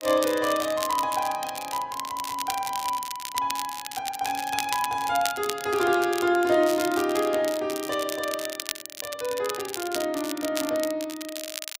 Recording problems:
crackle; vinyl, SNR 8 dB

